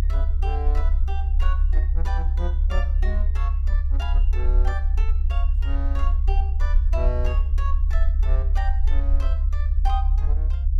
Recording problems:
rumble; below 68 Hz, strongest tone 36 Hz, SNR -13 dB

